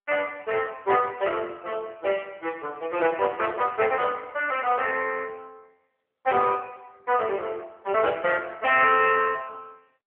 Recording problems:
telephone audio; 300 Hz to 3.2 kHz, AMR-NB

